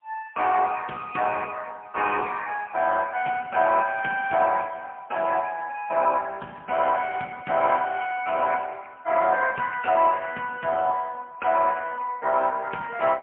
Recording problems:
phone line; 260 Hz to 3.1 kHz, AMR-NB, then MP3

